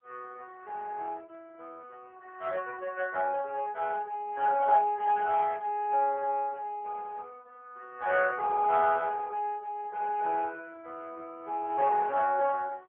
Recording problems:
phone line; 340 Hz to 2.5 kHz, AMR-NB

